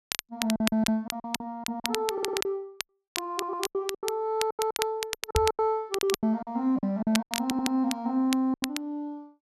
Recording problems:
crackle; vinyl, SNR 6 dB
lost packets; 17% of the sound replaced, filled with silence
stutter; at 2 s, at 3.5 s and at 7.5 s
knock on the microphone; at 5.5 s; peak +4 dB vs average level

